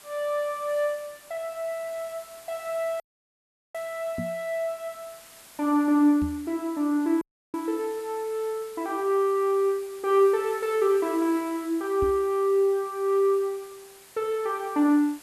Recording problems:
background hiss; slope -1 dB per octave, SNR 22 dB
dropout; at 3 s for 0.5 s and at 7 s
microphone bump; at 4 s, at 6 s and at 12 s; peak -3 dB vs average level

